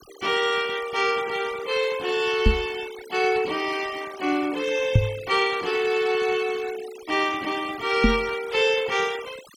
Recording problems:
noise reduction artefacts; signal-to-artefact ratio 16 dB
microphone bump; at 2.5 s, at 5 s and at 8 s; peak +10 dB vs average level

